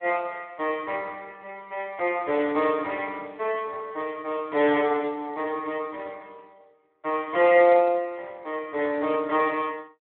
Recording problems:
telephone audio; 300 Hz to 3.4 kHz, Speex

